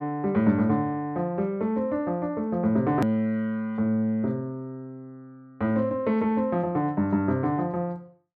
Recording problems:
edit click; at 3 s

